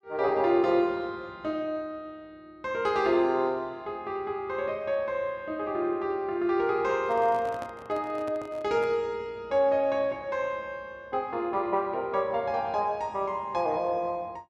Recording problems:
microphone handling noise; from 7 to 9 s; peak -8 dB vs average level

